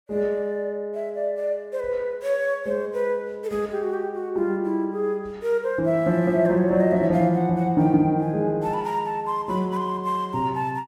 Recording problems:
none

